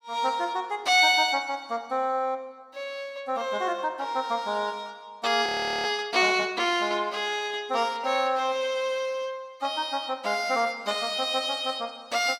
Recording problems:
audio freezing; at 5.5 s

